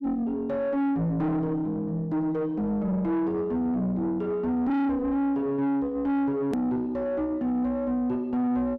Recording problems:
distortion; soft clipping, signal-to-distortion ratio 6 dB
edit click; at 6.5 s

